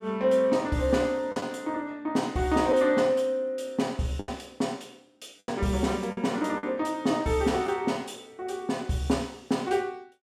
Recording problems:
lost packets; 4% of the sound replaced, filled with the last packet

